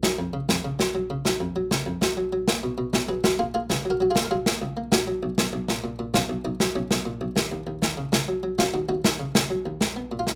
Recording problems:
electrical hum; 60 Hz, harmonics up to 480 Hz, SNR 21 dB

